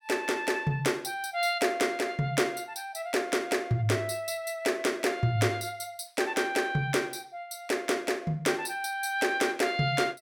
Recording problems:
none

